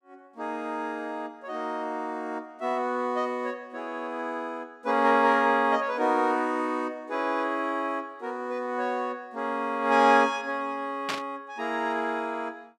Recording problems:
static burst; at 11 s; peak +1 dB vs average level

